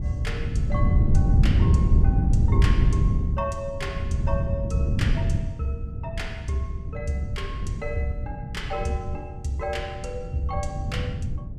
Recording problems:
wind noise; below 130 Hz, SNR -6 dB

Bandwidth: 15.5 kHz